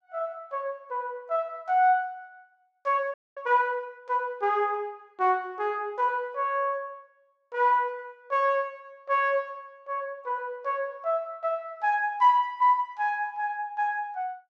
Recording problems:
frozen audio; at 3 s

